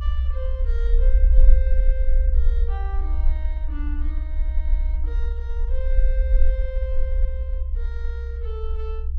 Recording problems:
low-frequency rumble; below 52 Hz, strongest tone 20 Hz, SNR -15 dB

